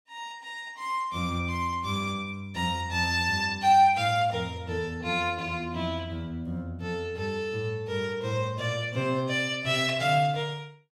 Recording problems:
none

